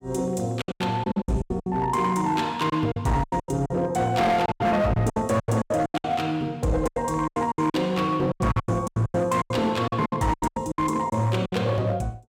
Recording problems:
distortion; hard clipping, signal-to-distortion ratio 11 dB
packet loss; 18% of the sound replaced, filled with silence

